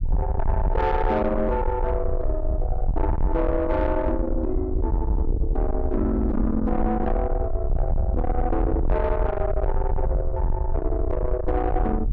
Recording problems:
distorted audio; soft clipping, signal-to-distortion ratio 8 dB
rumble; below 76 Hz, SNR 1 dB

